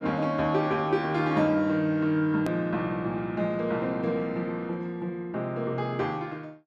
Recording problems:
hard cut with a click; at 2.5 s

